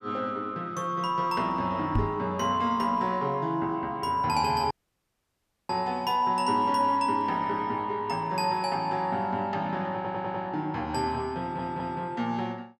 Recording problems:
microphone bump; at 2 s; peak +5 dB vs average level
dropout; at 4.5 s for 1 s
audio stuttering; at 10 s and at 11 s

